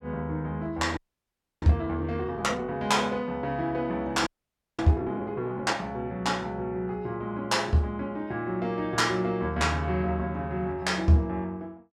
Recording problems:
audio freezing; at 1 s for 0.5 s and at 4.5 s for 0.5 s

